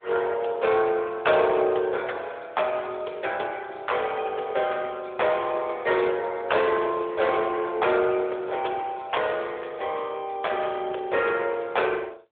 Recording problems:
phone line; 320 Hz to 3.5 kHz, AMR-NB

